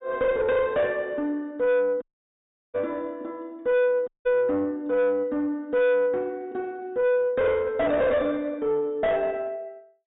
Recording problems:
low-pass filter; nothing above 4 kHz
distortion; soft clipping, signal-to-distortion ratio 6 dB
audio cutting out; at 2 s for 0.5 s and at 4 s

